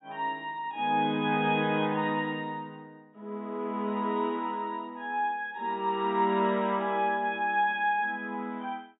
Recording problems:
low-pass filter; nothing above 4 kHz

